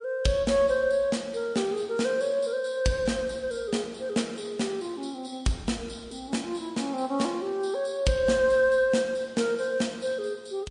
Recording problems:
lossy codec; MP3, log-spectral distance 3 dB, nothing above 9.5 kHz

